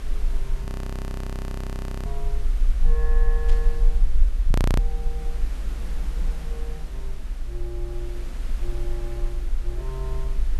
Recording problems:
background hiss; slope -4 dB per octave, SNR 4 dB
low-frequency rumble; below 46 Hz, SNR -12 dB
audio freezing; at 0.5 s for 1.5 s and at 4.5 s
burst of static; at 3.5 s; peak +2 dB vs average level

